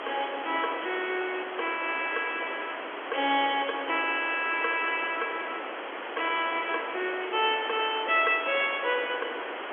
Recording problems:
telephone audio; 280 Hz to 3.3 kHz, G.711
background hiss; SNR 7 dB

